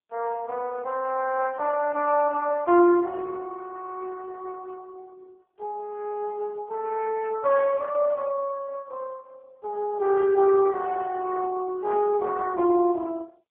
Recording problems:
phone line; 300 Hz to 2.6 kHz, AMR-NB

